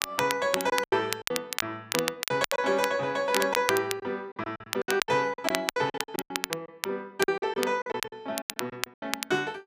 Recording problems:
crackle; vinyl, SNR 4 dB
packet loss; 16% of the sound replaced, filled with silence

